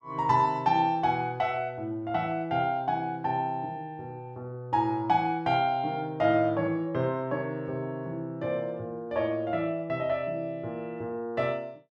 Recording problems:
none

